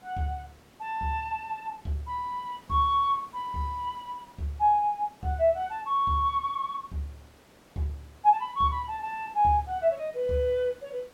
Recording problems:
background hiss; slope -5 dB per octave, SNR 26 dB

